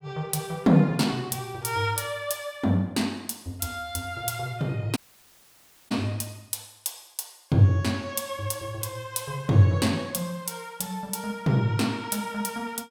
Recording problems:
audio cutting out; at 5 s for 1 s

